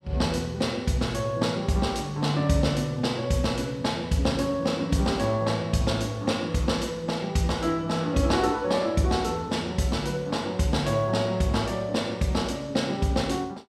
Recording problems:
none

